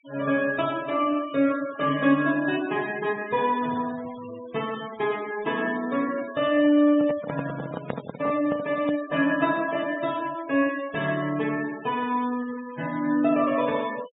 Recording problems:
treble cut off; nothing above 4 kHz
noise reduction artefacts; signal-to-artefact ratio 18 dB
handling noise; from 7 to 9 s; peak -1 dB vs average level

